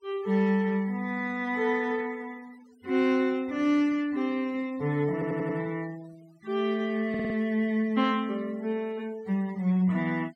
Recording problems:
noise reduction artefacts; signal-to-artefact ratio 25 dB
audio stuttering; at 5 s and at 7 s

